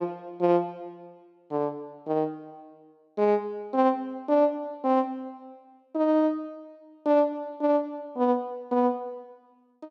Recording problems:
none

